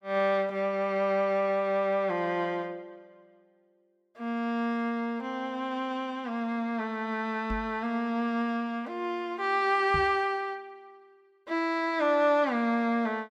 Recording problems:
microphone thump; at 7.5 s and at 10 s; peak -2 dB vs average level

